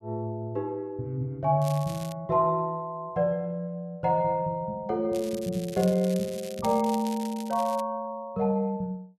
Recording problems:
crackle; at 1.5 s and from 5 to 8 s; loose cable, SNR 16 dB

